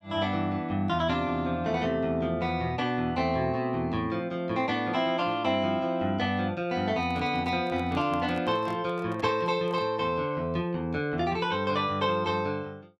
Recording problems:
handling noise; from 7 to 10 s; peak -10 dB vs average level

